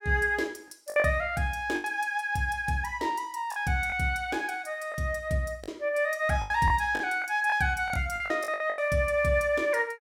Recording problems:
lost packets; 8% of the sound replaced, filled with the last packet

